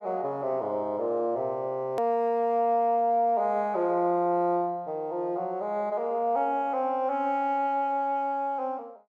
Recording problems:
click at an edit; at 2 s

